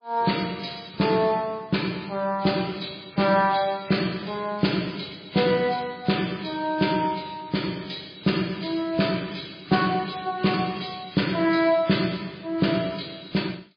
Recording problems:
lossy compression; MP3, log-spectral distance 7 dB, nothing above 4.6 kHz

